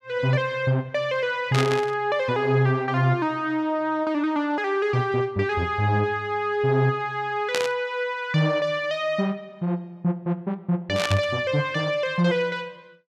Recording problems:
static burst; at 1.5 s, at 7.5 s and at 11 s; peak +2 dB vs average level

